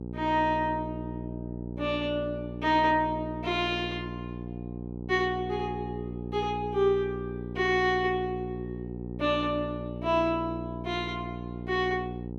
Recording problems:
hum; 60 Hz, harmonics up to 900 Hz, SNR 8 dB

